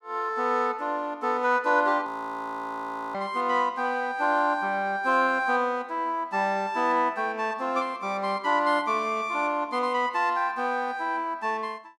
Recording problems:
audio freezing; at 2 s for 1 s

